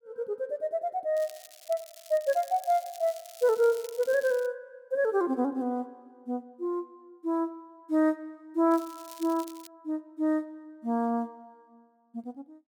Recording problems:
crackling; from 1 to 4.5 s and at 8.5 s; loose cable, SNR 19 dB

